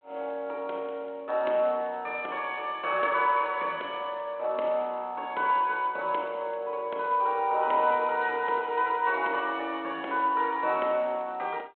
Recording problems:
phone line; 320 Hz to 3.3 kHz, G.726

